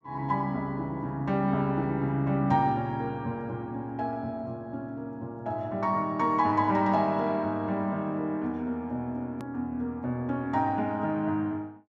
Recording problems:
edit click; at 9.5 s

